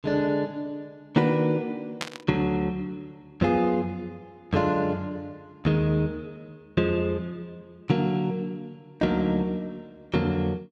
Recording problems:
static burst; at 2 s; peak 0 dB vs average level

